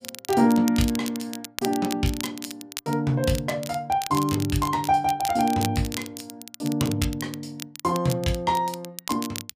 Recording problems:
crackling; vinyl, SNR 11 dB

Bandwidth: 15 kHz